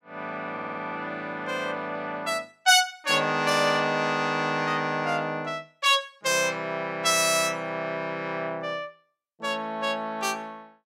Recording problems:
audio stuttering; at 0.5 s

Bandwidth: 16 kHz